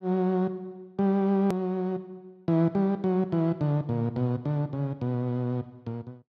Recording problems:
hard cut with a click; at 1.5 s

